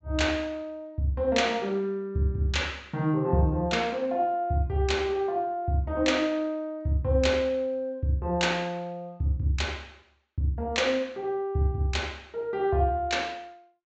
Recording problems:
low-pass filter; nothing above 8 kHz

